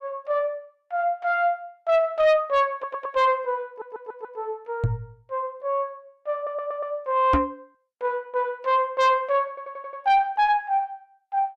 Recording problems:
distortion; soft clipping, signal-to-distortion ratio 12 dB
stutter; 4 times, first at 2.5 s
microphone bump; at 5 s and at 7.5 s; peak +5 dB vs average level

